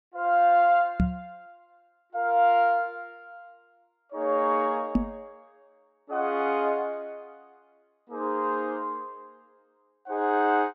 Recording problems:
microphone bump; at 1 s and at 5 s; peak +6 dB vs average level

